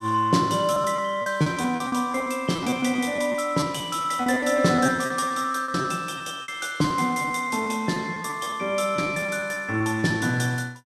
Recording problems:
packet loss; 13% of the sound replaced, filled with repeated pitch periods

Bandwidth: 13.5 kHz